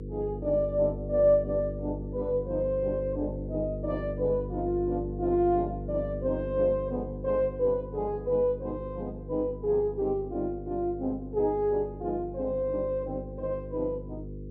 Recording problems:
hum; 50 Hz, harmonics up to 500 Hz, SNR 9 dB

